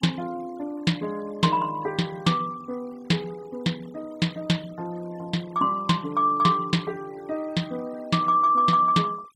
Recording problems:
noise reduction artefacts; signal-to-artefact ratio 25 dB

